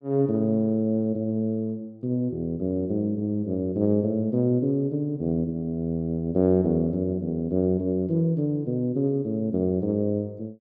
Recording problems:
none

